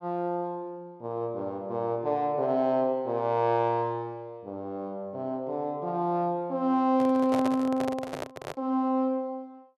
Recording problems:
microphone handling noise; from 7 to 8.5 s; peak -1 dB vs average level

